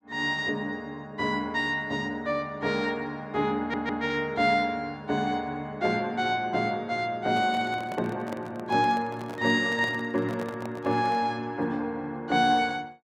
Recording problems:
audio stuttering; at 3.5 s
microphone handling noise; from 7.5 to 11 s; peak -6 dB vs average level

